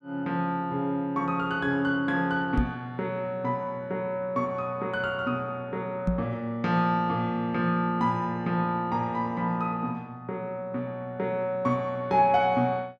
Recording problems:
microphone bump; at 2.5 s and at 6 s; peak +6 dB vs average level

